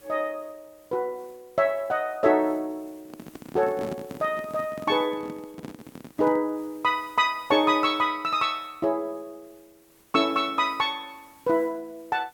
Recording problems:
background hiss; slope -3 dB per octave, SNR 29 dB
handling noise; from 3 to 6.5 s; peak -5 dB vs average level

